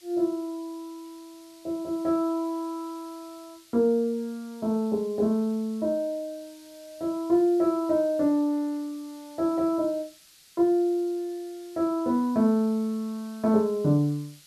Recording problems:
hiss; SNR 25 dB

